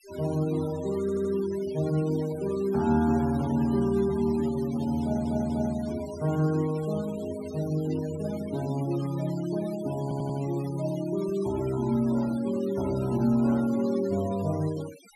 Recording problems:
denoising artefacts; signal-to-artefact ratio 18 dB
stutter; at 1 s, at 5 s and at 10 s

